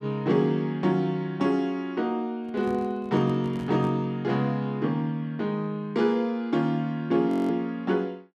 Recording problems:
handling noise; from 2.5 to 4 s; peak -10 dB vs average level
frozen audio; at 7.5 s

